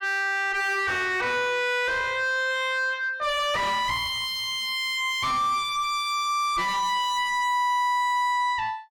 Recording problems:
distorted audio; soft clipping, signal-to-distortion ratio 6 dB

